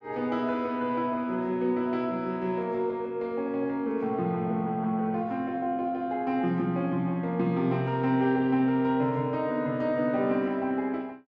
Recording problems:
none

